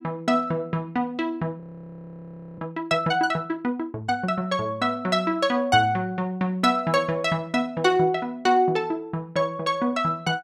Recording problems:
frozen audio; at 1.5 s for 1 s

